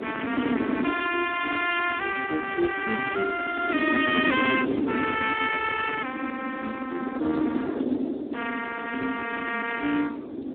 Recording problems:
telephone audio; 240 Hz to 3.4 kHz, Speex
wind noise; below 390 Hz, SNR 4 dB

